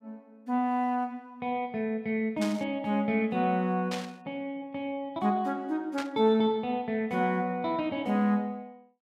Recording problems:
burst of static; at 2.5 s, at 4 s and at 6 s; peak -3 dB vs average level

